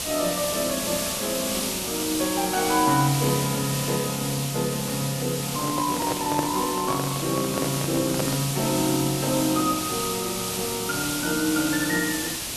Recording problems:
background hiss; SNR 2 dB
handling noise; from 5.5 to 8.5 s; peak +2 dB vs average level

